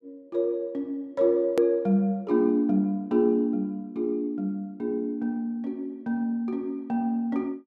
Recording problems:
edit click; at 1.5 s

